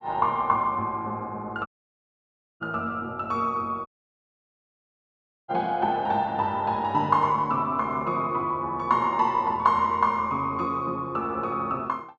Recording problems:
audio cutting out; at 1.5 s for 1 s and at 4 s for 1.5 s

